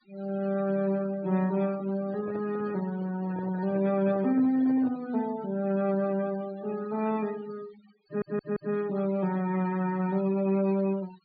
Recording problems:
treble cut off; nothing above 4.7 kHz
denoising artefacts; signal-to-artefact ratio 20 dB
handling noise; from 2 to 5 s; peak -10 dB vs average level
stutter; at 8 s

